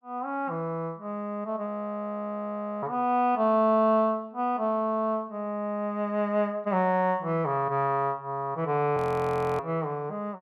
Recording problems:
frozen audio; at 1.5 s for 1 s and at 9 s for 0.5 s

